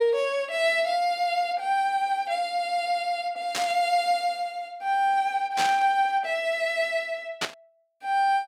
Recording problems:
static burst; at 3.5 s, at 5.5 s and at 7.5 s; peak +2 dB vs average level

